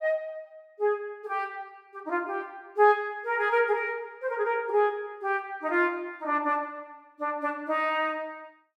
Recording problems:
none

